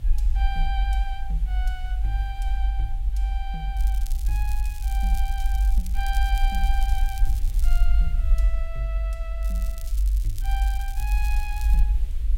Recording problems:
background hiss; SNR 18 dB
rumble; below 50 Hz, SNR -11 dB
crackling; from 4 to 8 s and from 9.5 to 12 s; loose cable, SNR 8 dB

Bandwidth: 16 kHz